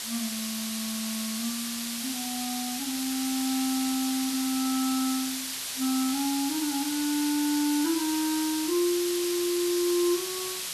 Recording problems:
background hiss; slope +3 dB per octave, SNR 2 dB

